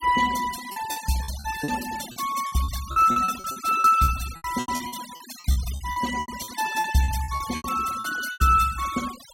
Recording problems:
denoising artefacts; signal-to-artefact ratio 12 dB
packet loss; 17% of the sound replaced, filled with repeated pitch periods

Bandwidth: 16.5 kHz